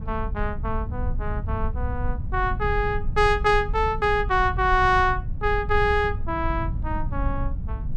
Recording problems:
rumble; below 84 Hz, SNR 6 dB

